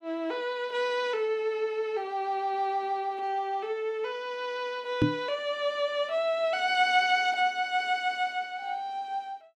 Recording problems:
microphone bump; at 5 s; peak +8 dB vs average level

